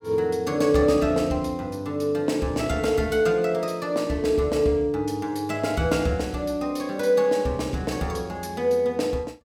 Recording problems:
none

